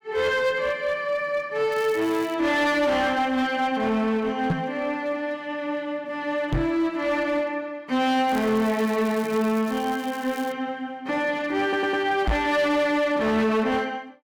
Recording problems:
distortion; hard clipping, uneven, signal-to-distortion ratio 10 dB
crackling; at 1.5 s and from 8.5 to 11 s; loose cable, SNR 20 dB
knock on the microphone; at 4.5 s, at 6.5 s and at 12 s; peak +4 dB vs average level
audio stuttering; at 12 s

